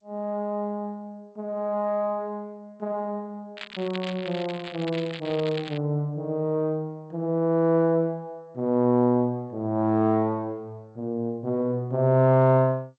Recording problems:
codec artefacts; G.722, log-spectral distance 3 dB
crackle; from 3.5 to 6 s; loose cable, SNR 14 dB

